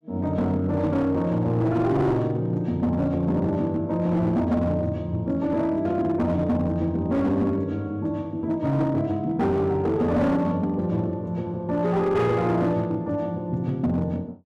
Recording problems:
distorted audio; hard clipping, signal-to-distortion ratio 12 dB

